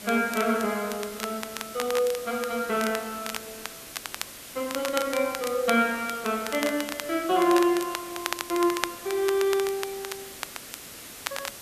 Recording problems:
background hiss; SNR 13 dB
crackling; vinyl, SNR 10 dB

